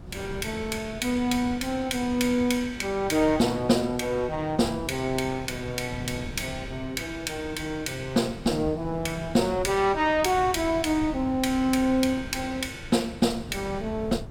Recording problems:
wind on the microphone; below 210 Hz, SNR 14 dB

